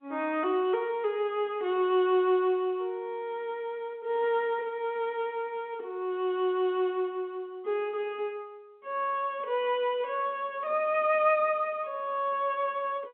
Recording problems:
telephone audio; 220 Hz to 3.7 kHz, G.711

